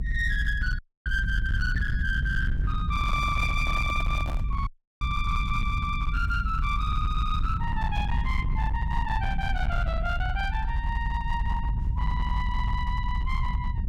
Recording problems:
distortion; hard clipping, signal-to-distortion ratio 12 dB
rumble; below 88 Hz, SNR -1 dB
audio cutting out; at 1 s and at 4.5 s
microphone handling noise; from 3 to 4.5 s; peak -4 dB vs average level

